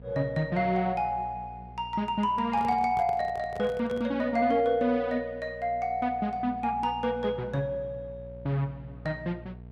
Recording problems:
electrical hum; 60 Hz, harmonics up to 720 Hz, SNR 18 dB
handling noise; from 2.5 to 4 s; peak -9 dB vs average level

